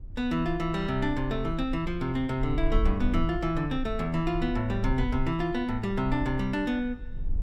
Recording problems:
low-frequency rumble; below 50 Hz, SNR 8 dB

